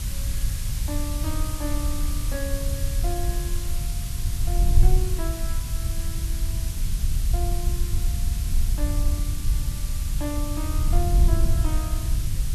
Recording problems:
background hiss; slope +2 dB per octave, SNR 0 dB
wind on the microphone; below 70 Hz, SNR -9 dB

